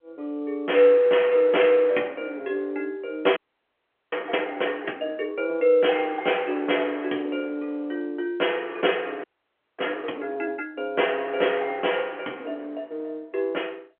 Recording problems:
telephone audio; 260 Hz to 3.2 kHz, G.711
audio freezing; at 3.5 s for 1 s and at 9 s for 0.5 s

